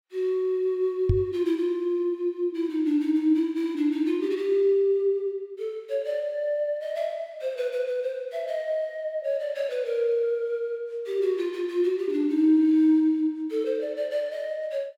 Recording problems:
microphone thump; at 1 s; peak +6 dB vs average level

